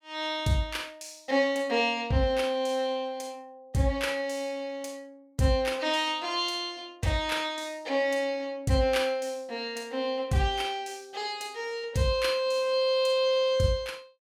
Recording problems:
none

